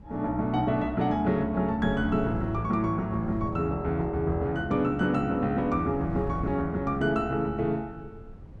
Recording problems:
wind on the microphone; below 170 Hz, SNR 16 dB

